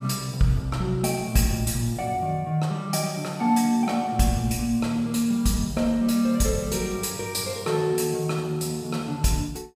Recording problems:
none

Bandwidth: 15.5 kHz